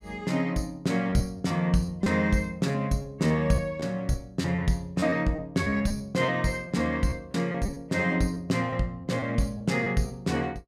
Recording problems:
packet loss; 7% of the sound replaced, filled with repeated pitch periods

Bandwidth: 17 kHz